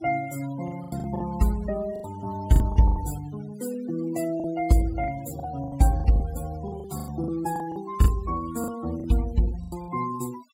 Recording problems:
denoising artefacts; signal-to-artefact ratio 16 dB
packet loss; 12% of the sound replaced, filled with the last packet

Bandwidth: 16 kHz